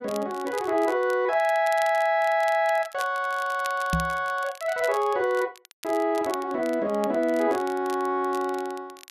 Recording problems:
crackle; vinyl, SNR 20 dB
microphone thump; at 4 s; peak +2 dB vs average level

